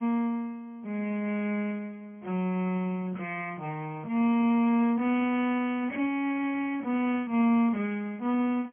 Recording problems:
treble missing; nothing above 3 kHz
lossy compression; MP3, then Speex, log-spectral distance 2 dB

